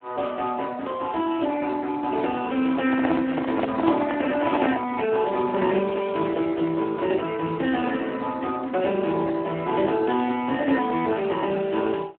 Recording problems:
telephone audio; 220 Hz to 3.2 kHz, Speex
microphone handling noise; from 2.5 to 5 s; peak +3 dB vs average level

